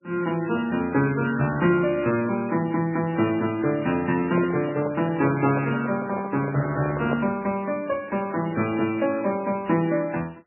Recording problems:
lossy compression; MP3, log-spectral distance 4 dB, nothing above 2.7 kHz
microphone handling noise; from 4 to 7.5 s; peak +1 dB vs average level

